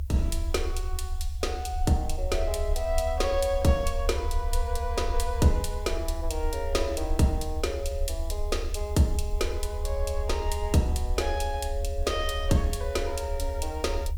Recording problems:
hiss; SNR 29 dB
rumble; below 68 Hz, strongest tone 30 Hz, SNR 4 dB

